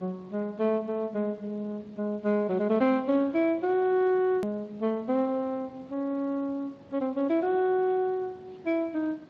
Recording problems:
codec artefacts; Speex, log-spectral distance 2 dB, nothing above 13.1 kHz
background hiss; slope -8 dB per octave, SNR 25 dB
hard cut with a click; at 4.5 s

